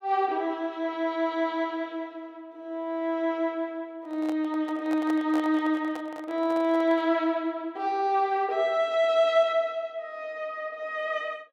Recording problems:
microphone handling noise; from 4 to 7 s; peak -6 dB vs average level

